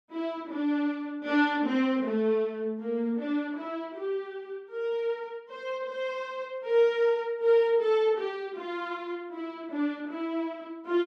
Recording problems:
none

